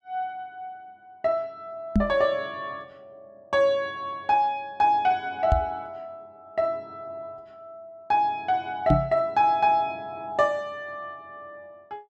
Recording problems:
microphone thump; at 2 s, at 5.5 s and at 9 s; peak +7 dB vs average level

